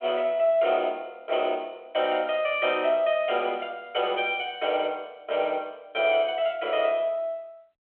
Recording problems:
phone line; 320 Hz to 3.3 kHz, G.726

